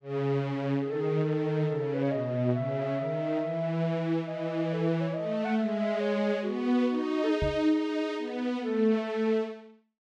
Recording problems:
microphone thump; at 7.5 s; peak 0 dB vs average level

